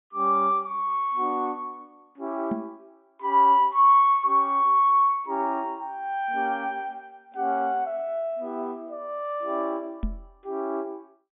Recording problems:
low-pass filter; nothing above 3.6 kHz
microphone thump; at 2.5 s and at 10 s; peak -1 dB vs average level

